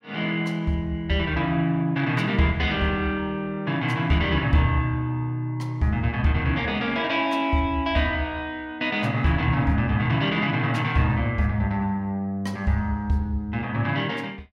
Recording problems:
none

